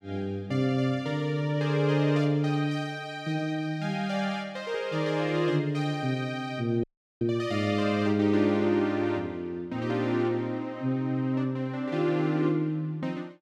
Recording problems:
audio cutting out; at 7 s

